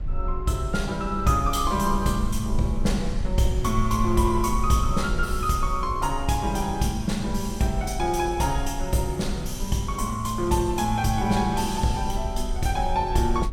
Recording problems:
low-frequency rumble; below 56 Hz, SNR 8 dB

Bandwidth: 17 kHz